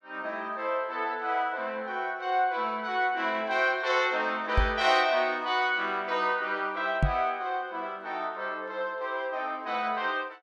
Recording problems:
microphone bump; at 4.5 s and at 7 s; peak +6 dB vs average level

